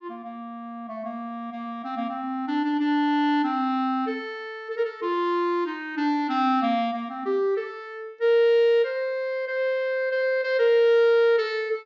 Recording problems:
low-pass filter; nothing above 7 kHz

